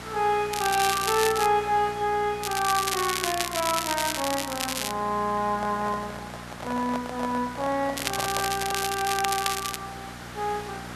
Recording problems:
hum; 60 Hz, harmonics up to 840 Hz, SNR 17 dB
background hiss; SNR 14 dB
crackle; at 0.5 s, from 2.5 to 5 s and from 8 to 10 s; loose cable, SNR 3 dB
microphone handling noise; from 5.5 to 9 s; peak -3 dB vs average level

